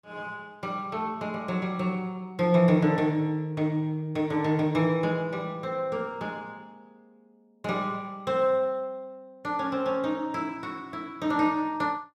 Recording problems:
none

